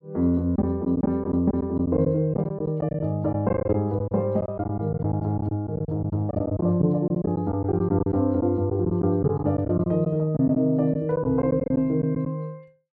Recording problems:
lost packets; 10% of the sound replaced, filled with silence

